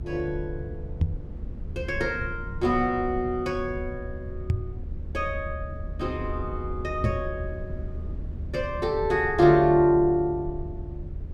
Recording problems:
rumble; below 94 Hz, SNR 11 dB
microphone bump; at 1 s, at 4.5 s and at 7 s; peak +5 dB vs average level

